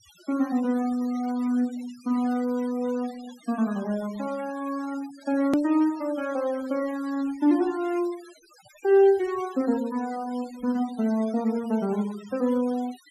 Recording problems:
denoising artefacts; signal-to-artefact ratio 21 dB
edit click; at 5.5 s

